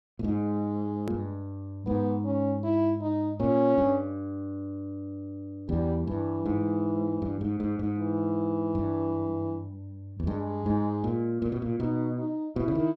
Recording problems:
click at an edit; at 1 s

